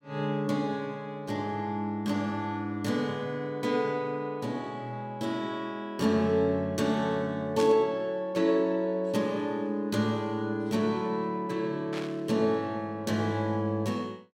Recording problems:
static burst; at 7.5 s and at 12 s; peak -4 dB vs average level

